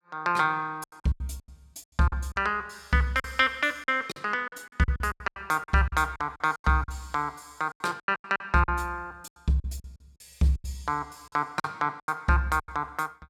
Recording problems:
packet loss; 15% of the sound replaced, filled with silence

